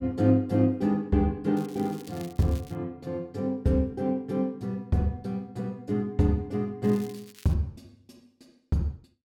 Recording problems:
crackling; from 1.5 to 3 s and at 7 s; loose cable, SNR 23 dB

